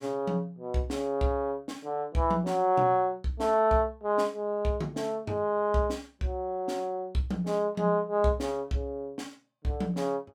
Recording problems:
none

